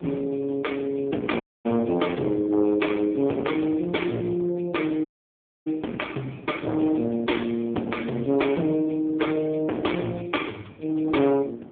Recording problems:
telephone audio; 190 Hz to 3.4 kHz, AMR-NB
distortion; hard clipping, uneven, signal-to-distortion ratio 7 dB
wind on the microphone; below 550 Hz, SNR 21 dB
dropout; at 1.5 s and at 5 s for 0.5 s

